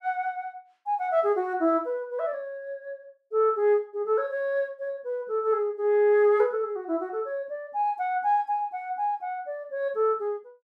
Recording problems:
none

